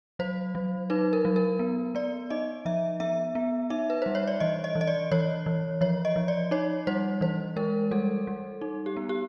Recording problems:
none

